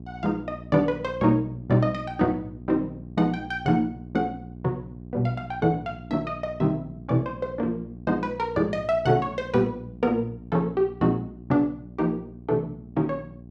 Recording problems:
electrical hum; 60 Hz, harmonics up to 720 Hz, SNR 15 dB

